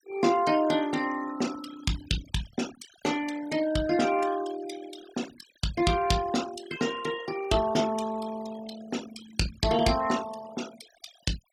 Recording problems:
denoising artefacts; signal-to-artefact ratio 14 dB

